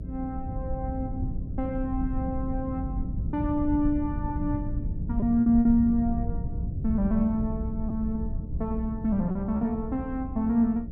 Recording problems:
electrical hum; 60 Hz, harmonics up to 660 Hz, SNR 13 dB
rumble; below 120 Hz, SNR 6 dB
lost packets; 2% of the sound replaced, filled with repeated pitch periods

